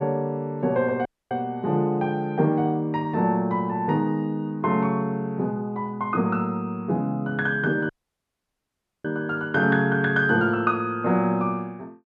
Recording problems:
dropout; at 1 s and at 8 s for 1 s

